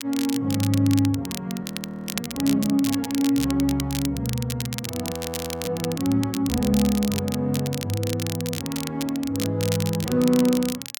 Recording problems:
crackling; vinyl, SNR 9 dB
frozen audio; at 1.5 s for 0.5 s and at 5 s for 0.5 s

